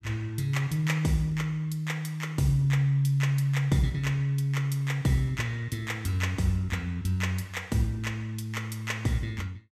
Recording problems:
none

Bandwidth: 15 kHz